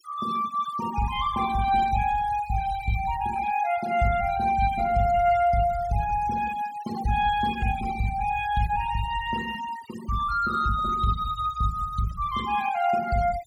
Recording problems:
denoising artefacts; signal-to-artefact ratio 15 dB

